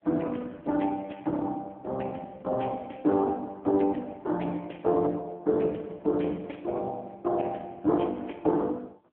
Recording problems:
telephone audio; 260 Hz to 3.3 kHz, AMR-NB

